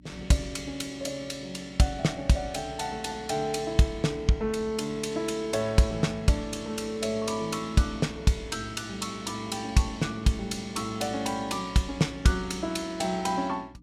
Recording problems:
electrical hum; 60 Hz, harmonics up to 300 Hz, SNR 23 dB

